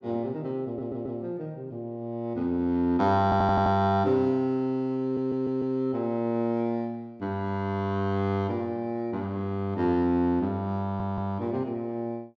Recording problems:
audio stuttering; 4 times, first at 0.5 s

